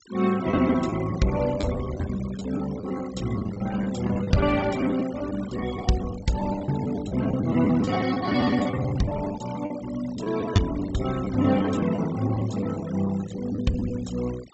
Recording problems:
low-pass filter; nothing above 7.9 kHz
denoising artefacts; signal-to-artefact ratio 16 dB
packet loss; 11% of the sound replaced, filled with the last packet

